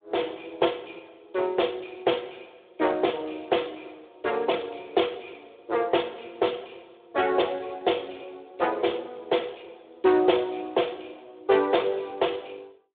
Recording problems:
telephone audio; 280 Hz to 3.7 kHz, Speex

